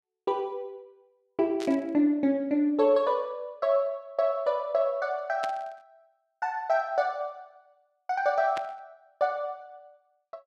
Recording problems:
static burst; at 1.5 s, at 5.5 s and at 8.5 s; peak -7 dB vs average level

